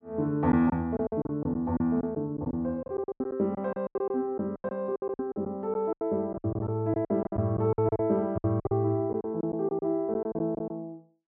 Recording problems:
lost packets; 16% of the sound replaced, filled with silence

